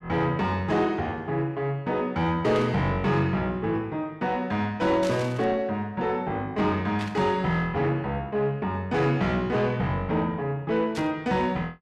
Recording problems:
distorted audio; soft clipping, signal-to-distortion ratio 11 dB
burst of static; 4 times, first at 2.5 s; peak -7 dB vs average level

